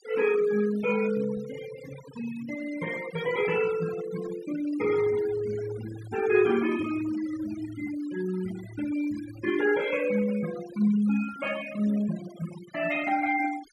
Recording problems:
denoising artefacts; signal-to-artefact ratio 15 dB

